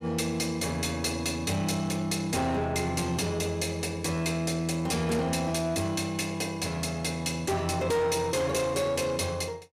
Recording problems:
distortion; soft clipping, signal-to-distortion ratio 11 dB

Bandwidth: 15 kHz